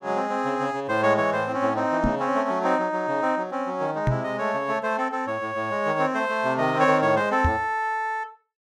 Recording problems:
microphone bump; at 2 s, at 4 s and at 7.5 s; peak +3 dB vs average level

